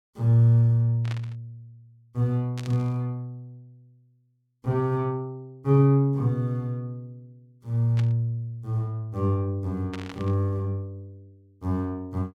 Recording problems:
burst of static; 4 times, first at 1 s; peak -10 dB vs average level

